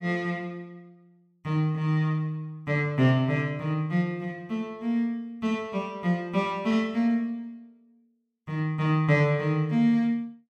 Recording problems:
none

